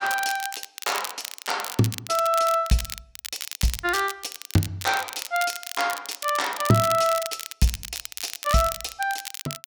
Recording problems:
crackling; vinyl, SNR 9 dB

